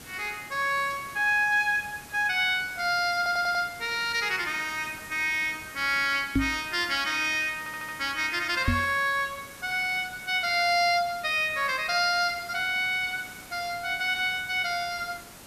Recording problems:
background hiss; slope -2 dB per octave, SNR 18 dB
stutter; at 3 s and at 7.5 s
microphone thump; at 6.5 s and at 8.5 s; peak +5 dB vs average level

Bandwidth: 14.5 kHz